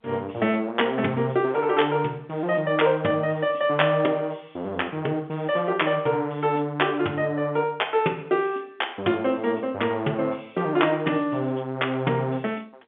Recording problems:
phone line; 190 Hz to 3.5 kHz, G.711

